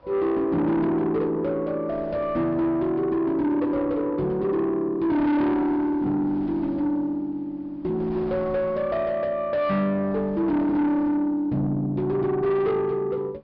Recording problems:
treble missing; nothing above 5.5 kHz
distorted audio; soft clipping, signal-to-distortion ratio 10 dB
wind noise; below 900 Hz, SNR 22 dB

